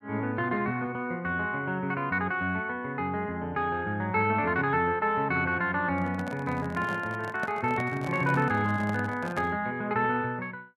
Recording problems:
handling noise; from 6 to 9.5 s; peak -4 dB vs average level

